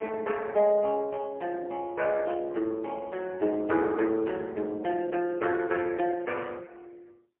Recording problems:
telephone audio; 220 Hz to 3.2 kHz, AMR-NB, then MP3

